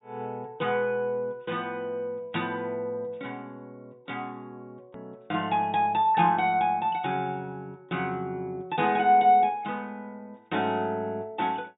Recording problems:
treble missing; nothing above 4 kHz
hard cut with a click; at 5 s

